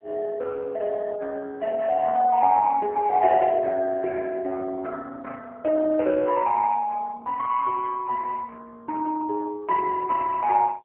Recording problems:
telephone audio; 320 Hz to 3 kHz, AMR-NB

